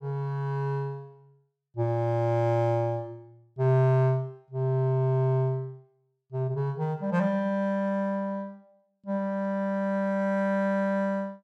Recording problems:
none

